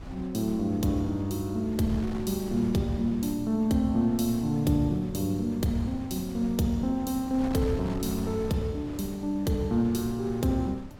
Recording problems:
wind noise; below 260 Hz, SNR 14 dB

